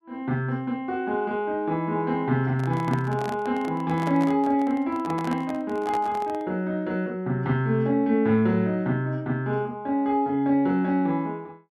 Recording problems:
microphone handling noise; from 2.5 to 6.5 s; peak -6 dB vs average level

